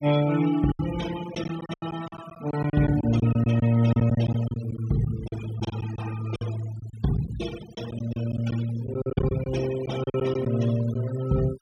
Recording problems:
denoising artefacts; signal-to-artefact ratio 13 dB
packet loss; 11% of the sound replaced, filled with silence

